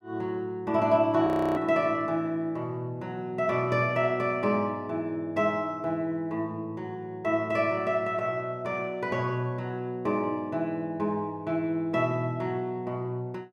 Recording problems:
audio freezing; at 1.5 s

